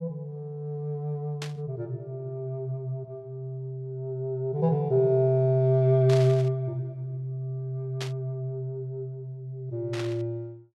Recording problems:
static burst; 4 times, first at 1.5 s; peak -4 dB vs average level

